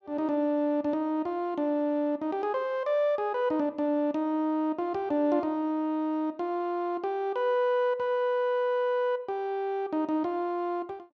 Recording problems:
none

